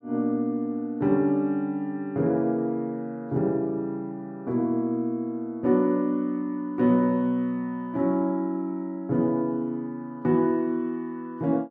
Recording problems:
none

